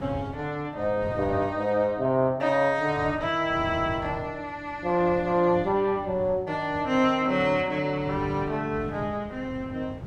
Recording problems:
wind noise; below 250 Hz, SNR 15 dB

